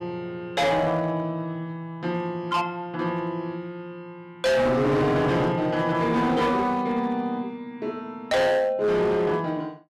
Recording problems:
distorted audio; hard clipping, signal-to-distortion ratio 7 dB

